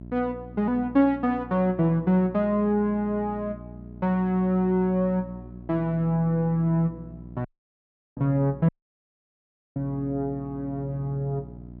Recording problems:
mains hum; 60 Hz, harmonics up to 720 Hz, SNR 17 dB
dropout; at 7.5 s for 0.5 s and at 8.5 s for 1 s

